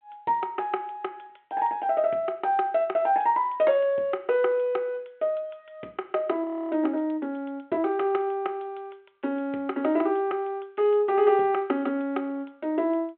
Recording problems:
phone line; 240 Hz to 3.4 kHz, G.726
frozen audio; at 6.5 s

